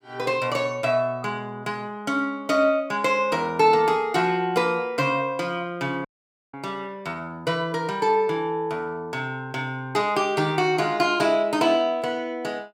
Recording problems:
dropout; at 6 s

